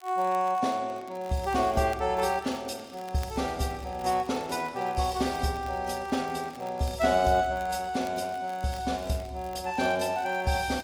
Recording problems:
lossy codec; AAC, log-spectral distance 3 dB
crackle; vinyl, SNR 24 dB

